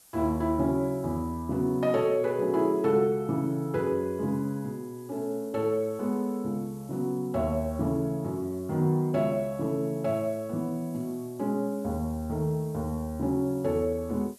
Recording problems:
background hiss; SNR 25 dB

